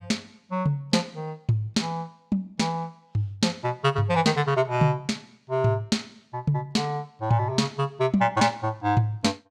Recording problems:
none

